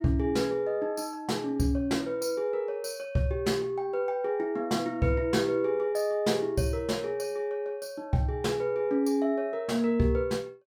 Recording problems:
none

